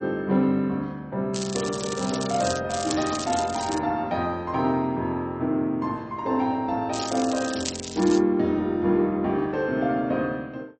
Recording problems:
codec artefacts; MP3, log-spectral distance 6 dB, nothing above 6.5 kHz
crackling; from 1.5 to 2.5 s, from 2.5 to 4 s and from 7 to 8 s; loose cable, SNR 8 dB

